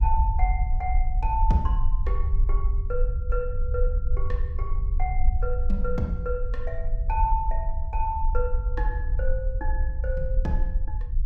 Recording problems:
rumble; below 54 Hz, SNR -4 dB

